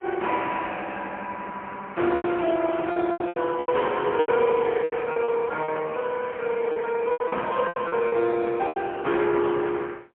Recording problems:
telephone audio; 260 Hz to 3.4 kHz, AMR-NB, then MP3
lost packets; 10% of the sound replaced, filled with repeated pitch periods

